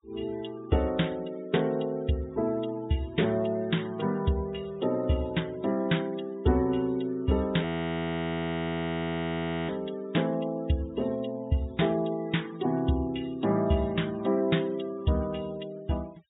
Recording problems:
treble cut off; nothing above 4 kHz
denoising artefacts; signal-to-artefact ratio 23 dB
frozen audio; at 7.5 s for 2 s

